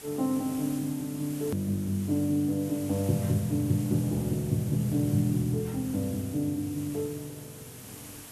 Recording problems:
hiss; slope -2 dB per octave, SNR 15 dB
click at an edit; at 1.5 s

